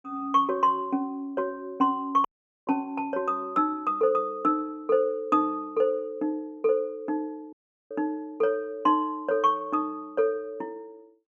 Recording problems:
audio cutting out; at 2.5 s and at 7.5 s

